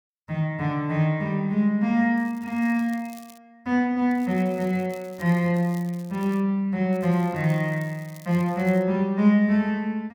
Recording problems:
crackling; from 2 to 3.5 s, from 4 to 6.5 s and from 7 to 9 s; loose cable, SNR 27 dB

